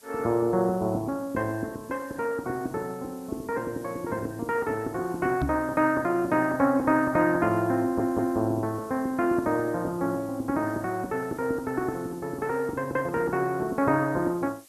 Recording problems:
lossy compression; MP2, log-spectral distance 2 dB
hiss; slope 0 dB per octave, SNR 25 dB
microphone bump; at 5.5 s; peak +2 dB vs average level
stutter; at 8 s

